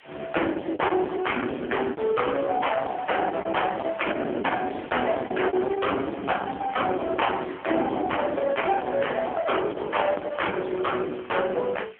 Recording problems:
telephone audio; 240 Hz to 3.2 kHz, AMR-NB
distorted audio; hard clipping, uneven, signal-to-distortion ratio 7 dB
hiss; SNR 25 dB
packet loss; 6% of the sound replaced, filled with the last packet

